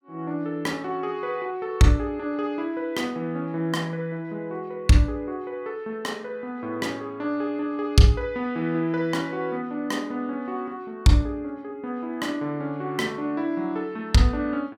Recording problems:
none

